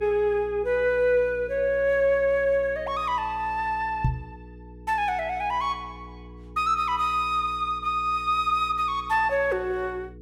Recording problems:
hum; 60 Hz, harmonics up to 480 Hz, SNR 20 dB
microphone bump; at 4 s; peak +4 dB vs average level

